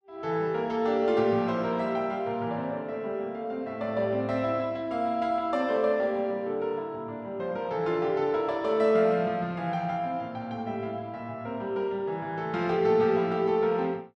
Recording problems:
none

